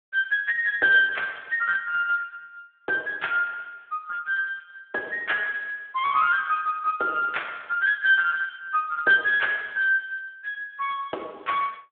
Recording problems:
telephone audio; 340 Hz to 3.5 kHz, Speex

